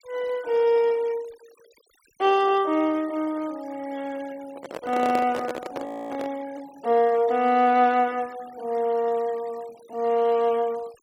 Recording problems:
noise reduction artefacts; signal-to-artefact ratio 24 dB
microphone handling noise; from 4.5 to 6.5 s; peak -3 dB vs average level
frozen audio; at 6 s

